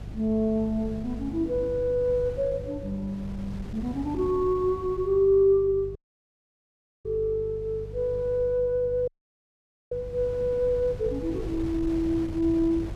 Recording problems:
mains hum; 50 Hz, harmonics up to 350 Hz, SNR 16 dB
wind on the microphone; below 190 Hz, SNR 15 dB
audio cutting out; at 6 s for 1 s and at 9 s for 1 s

